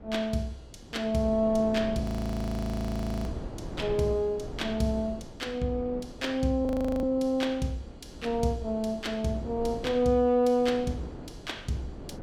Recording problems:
wind on the microphone; below 400 Hz, SNR 13 dB
audio freezing; at 2 s for 1 s and at 6.5 s

